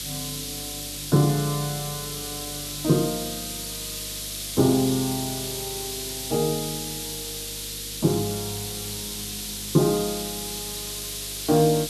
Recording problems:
electrical hum; 50 Hz, harmonics up to 550 Hz, SNR 19 dB
background hiss; SNR 5 dB

